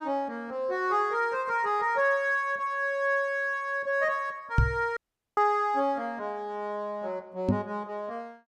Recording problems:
microphone thump; at 4.5 s and at 7.5 s; peak +8 dB vs average level
dropout; at 5 s

